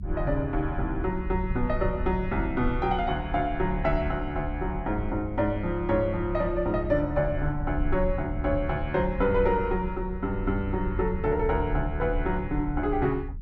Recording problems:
rumble; below 72 Hz, SNR 7 dB

